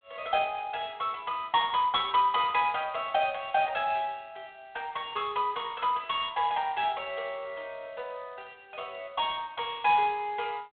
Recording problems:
phone line; 320 Hz to 3.7 kHz, G.726

